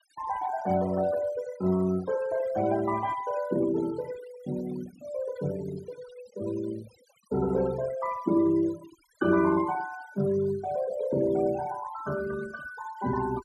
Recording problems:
noise reduction artefacts; signal-to-artefact ratio 17 dB

